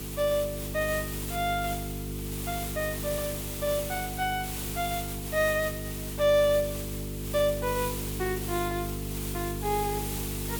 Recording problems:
hum; 50 Hz, harmonics up to 450 Hz, SNR 7 dB
hiss; SNR 6 dB

